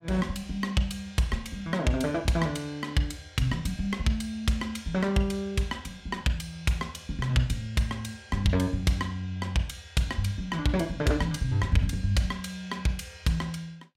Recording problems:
none

